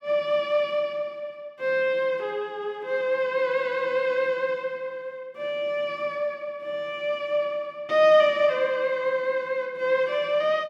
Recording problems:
none

